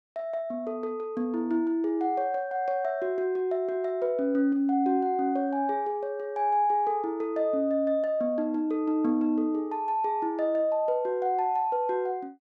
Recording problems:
none

